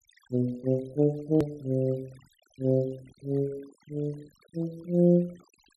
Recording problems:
denoising artefacts; signal-to-artefact ratio 28 dB
click at an edit; at 1.5 s

